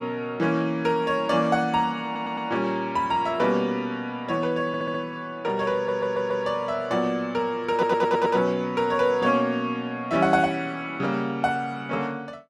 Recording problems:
audio stuttering; 4 times, first at 2 s

